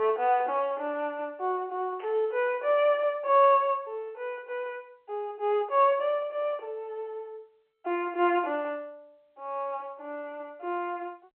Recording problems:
phone line; 300 Hz to 3.2 kHz, G.711
burst of static; at 2 s and at 3.5 s; peak -15 dB vs average level

